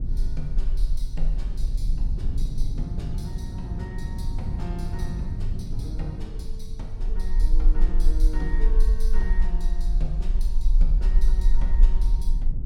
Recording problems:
electrical hum; 60 Hz, harmonics up to 1.3 kHz, SNR 26 dB
low-frequency rumble; below 38 Hz, strongest tone 26 Hz, SNR -13 dB
wind on the microphone; below 120 Hz, SNR -4 dB

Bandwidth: 16.5 kHz